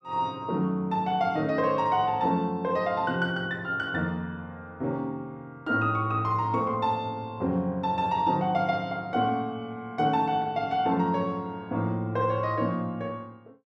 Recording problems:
none

